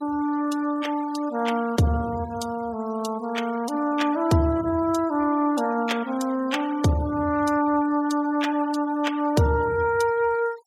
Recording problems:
denoising artefacts; signal-to-artefact ratio 21 dB

